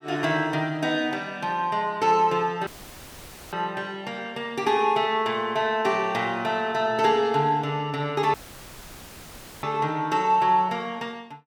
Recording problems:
audio cutting out; at 2.5 s for 1 s and at 8.5 s for 1.5 s; filled with static

